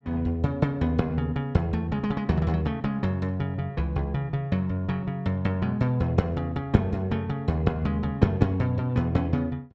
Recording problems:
none

